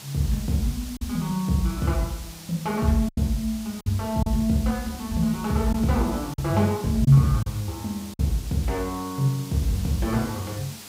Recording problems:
electrical hum; 50 Hz, harmonics up to 800 Hz, SNR 28 dB
background hiss; slope 0 dB per octave, SNR 16 dB
lost packets; 3% of the sound replaced, filled with silence

